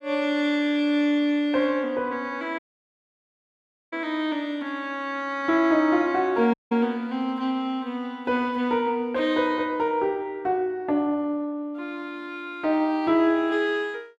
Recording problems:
dropout; at 2.5 s for 1.5 s and at 6.5 s

